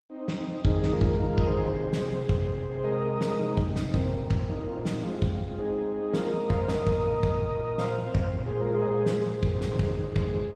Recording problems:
lossy compression; Opus, log-spectral distance 2 dB, nothing above 15.6 kHz

